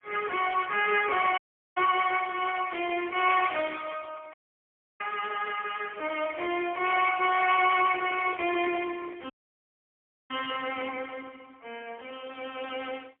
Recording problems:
phone line; 300 Hz to 3.3 kHz, AMR-NB, then MP3
audio cutting out; at 1.5 s, at 4.5 s for 0.5 s and at 9.5 s for 1 s
handling noise; from 6 to 9.5 s; peak -11 dB vs average level

